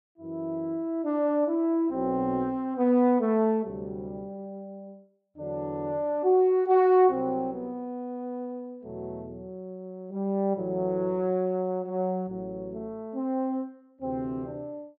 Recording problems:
none

